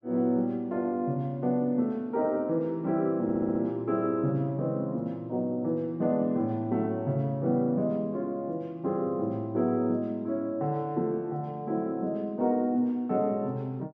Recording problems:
audio stuttering; at 3 s

